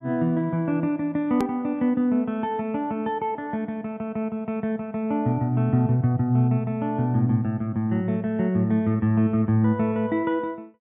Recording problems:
low-pass filter; nothing above 3.7 kHz
hard cut with a click; at 1.5 s

